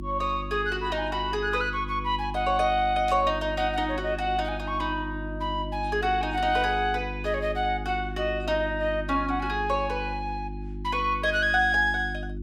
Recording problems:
hum; 50 Hz, harmonics up to 350 Hz, SNR 10 dB
static burst; at 3 s; peak -11 dB vs average level

